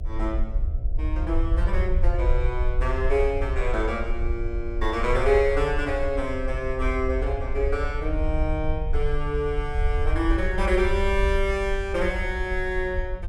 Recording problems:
electrical hum; 60 Hz, harmonics up to 720 Hz, SNR 21 dB
low-frequency rumble; below 60 Hz, SNR 2 dB

